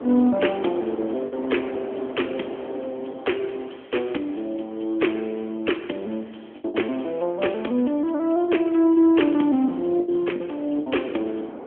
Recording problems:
phone line; 220 Hz to 3.3 kHz, AMR-NB
wind noise; below 640 Hz, SNR 15 dB
packet loss; 4% of the sound replaced, filled with the last packet

